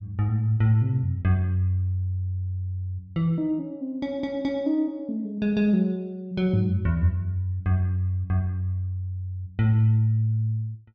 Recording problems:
none

